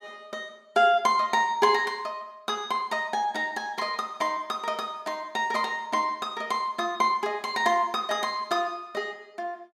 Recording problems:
none

